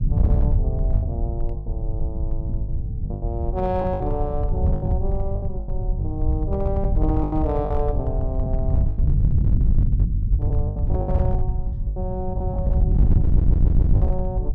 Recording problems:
distortion; hard clipping, uneven, signal-to-distortion ratio 11 dB
low-frequency rumble; below 100 Hz, SNR -7 dB
packet loss; 10% of the sound replaced, filled with the last packet
microphone bump; at 1.5 s; peak -3 dB vs average level
stutter; at 13 s

